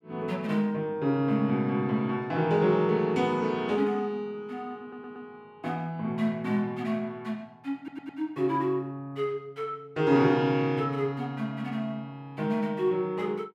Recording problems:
audio stuttering; at 5 s and at 8 s

